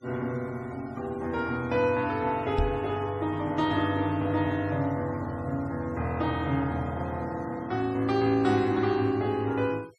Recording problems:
denoising artefacts; signal-to-artefact ratio 25 dB
microphone thump; at 2.5 s; peak +2 dB vs average level

